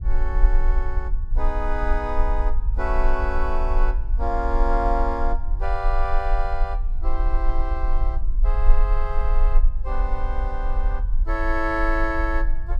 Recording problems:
low-frequency rumble; below 40 Hz, strongest tone 18 Hz, SNR -3 dB

